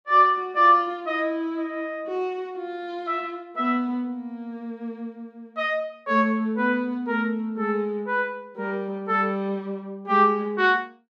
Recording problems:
none

